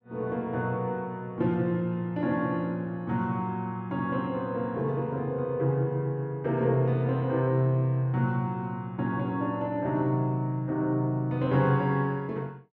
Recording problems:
none

